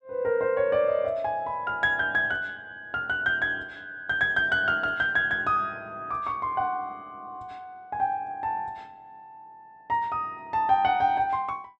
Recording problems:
none

